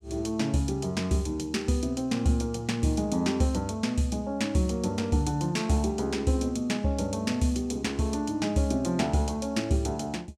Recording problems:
none

